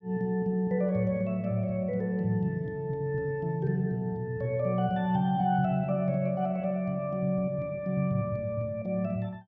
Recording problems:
none

